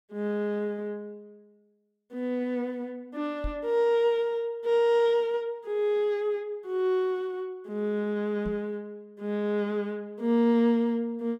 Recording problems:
microphone thump; at 3.5 s and at 8.5 s; peak -4 dB vs average level

